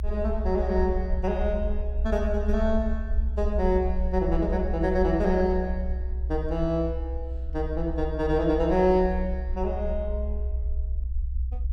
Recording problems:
low-frequency rumble; below 64 Hz, SNR 4 dB

